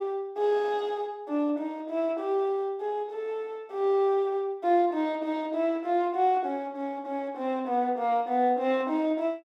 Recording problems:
none

